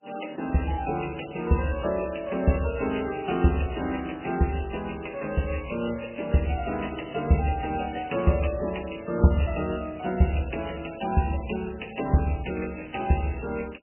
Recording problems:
codec artefacts; MP3, log-spectral distance 13 dB, nothing above 2.9 kHz

